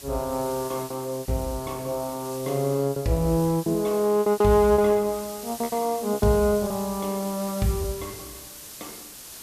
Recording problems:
background hiss; SNR 14 dB
lost packets; 10% of the sound replaced, filled with repeated pitch periods

